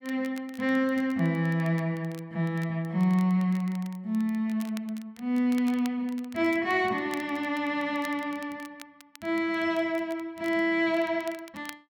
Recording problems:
crackle; vinyl, SNR 23 dB

